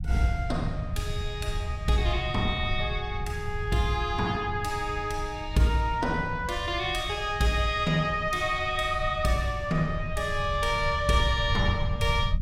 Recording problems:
low-frequency rumble; below 100 Hz, SNR 7 dB

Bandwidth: 16.5 kHz